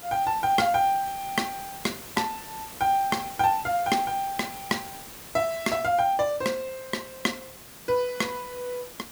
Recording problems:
hiss; slope -2 dB per octave, SNR 14 dB

